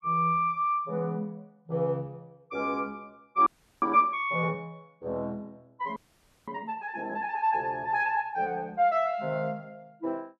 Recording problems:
frozen audio; at 3.5 s and at 6 s for 0.5 s

